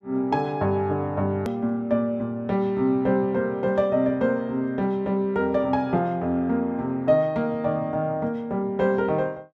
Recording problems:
click at an edit; at 1.5 s

